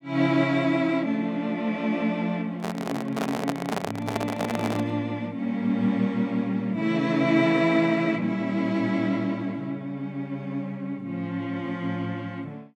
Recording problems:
handling noise; from 2.5 to 5 s; peak +2 dB vs average level

